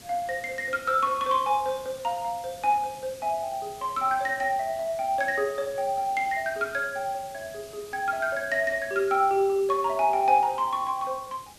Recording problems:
hiss; SNR 20 dB

